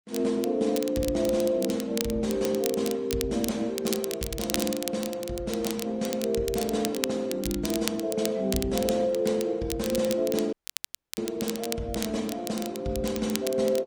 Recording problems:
lossy compression; Vorbis, then Opus, log-spectral distance 3 dB
crackling; vinyl, SNR 8 dB
audio cutting out; at 11 s for 0.5 s

